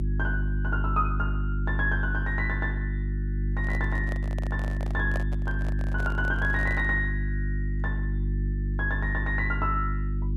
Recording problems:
hum; 50 Hz, harmonics up to 350 Hz, SNR -1 dB
handling noise; from 3.5 to 7 s; peak -1 dB vs average level

